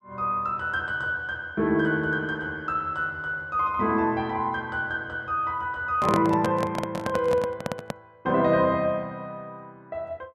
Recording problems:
microphone handling noise; from 6 to 8 s; peak +4 dB vs average level

